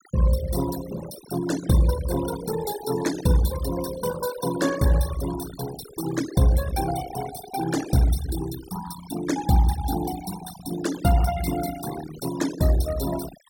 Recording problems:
noise reduction artefacts; signal-to-artefact ratio 11 dB

